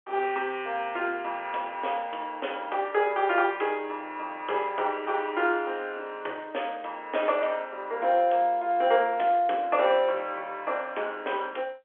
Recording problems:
telephone audio; 340 Hz to 3.4 kHz, G.711

